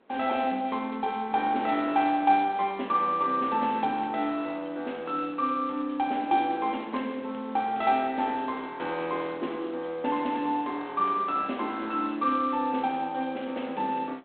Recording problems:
telephone audio; 220 Hz to 4 kHz, G.726
wind on the microphone; below 1 kHz, SNR 22 dB

